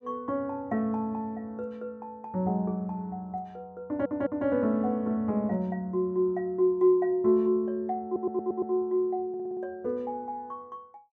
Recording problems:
stutter; at 4 s, at 8 s and at 9.5 s

